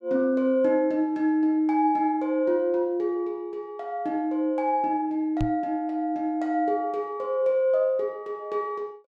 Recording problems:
knock on the microphone; at 5.5 s; peak 0 dB vs average level

